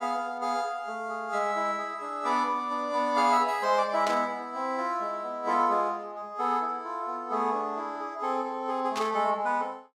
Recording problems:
static burst; at 4 s and at 9 s; peak -3 dB vs average level

